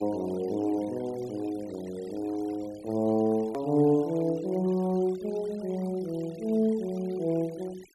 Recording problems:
noise reduction artefacts; signal-to-artefact ratio 23 dB
click at an edit; at 3.5 s

